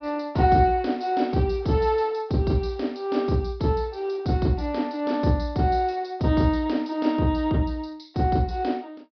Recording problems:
low-pass filter; nothing above 5.5 kHz

